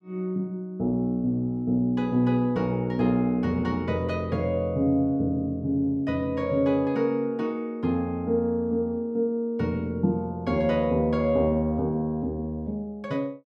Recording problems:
none

